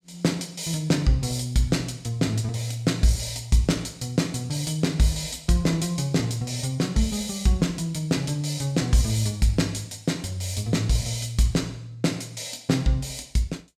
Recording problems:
none

